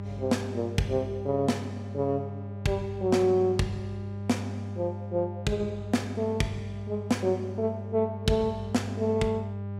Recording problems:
mains hum; 50 Hz, harmonics up to 1 kHz, SNR 8 dB

